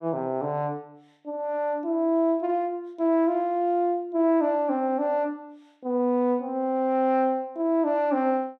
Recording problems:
none

